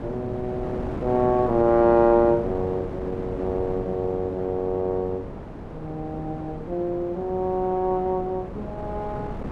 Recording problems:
wind noise; below 530 Hz, SNR 10 dB

